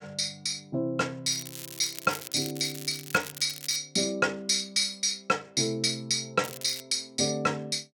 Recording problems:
crackling; from 1.5 to 4 s and at 6.5 s; loose cable, SNR 12 dB

